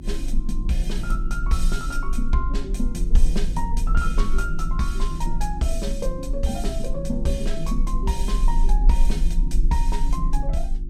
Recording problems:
electrical hum; 50 Hz, harmonics up to 350 Hz, SNR 8 dB
low-frequency rumble; below 36 Hz, SNR -2 dB

